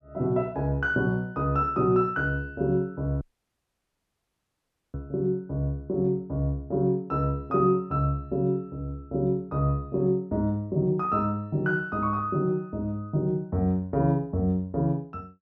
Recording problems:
dropout; at 3 s for 1.5 s

